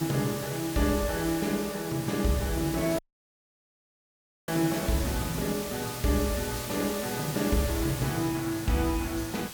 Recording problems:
hiss; slope -1 dB per octave, SNR 8 dB
dropout; at 3 s for 1.5 s

